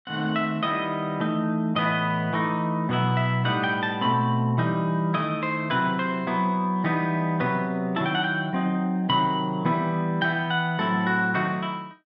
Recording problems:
treble missing; nothing above 5.5 kHz

